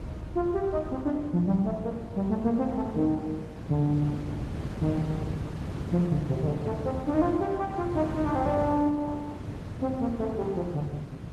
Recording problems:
lossy codec; Opus, log-spectral distance 2 dB
wind noise; below 210 Hz, SNR 7 dB

